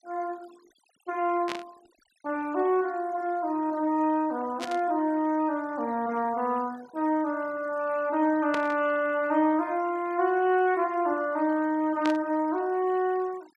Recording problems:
denoising artefacts; signal-to-artefact ratio 25 dB
static burst; 4 times, first at 1.5 s; peak -3 dB vs average level

